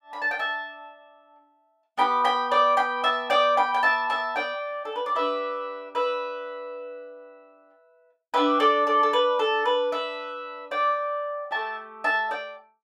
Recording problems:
none

